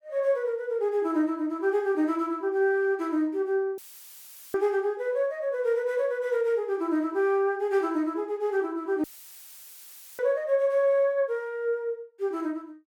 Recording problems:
dropout; at 4 s for 1 s and at 9 s for 1 s; filled with static

